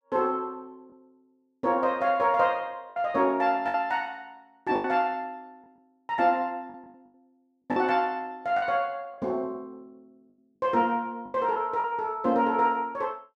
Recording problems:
lost packets; 5% of the sound replaced, filled with the last packet

